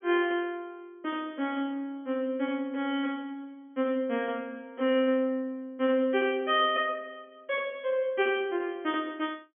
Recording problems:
treble cut off; nothing above 3.4 kHz

